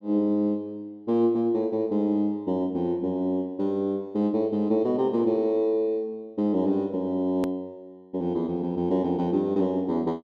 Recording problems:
hard cut with a click; at 7.5 s

